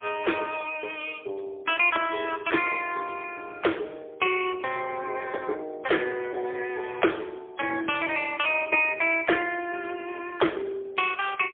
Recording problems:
phone line; 300 Hz to 3.4 kHz, AMR-NB, then MP3

